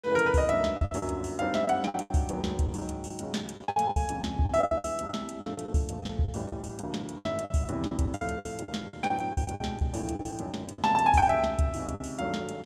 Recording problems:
packet loss; 15% of the sound replaced, filled with the last packet

